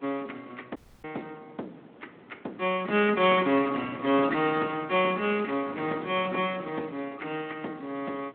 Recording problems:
telephone audio; 220 Hz to 3.5 kHz, Speex
wind noise; below 710 Hz, SNR 18 dB
audio cutting out; at 1 s

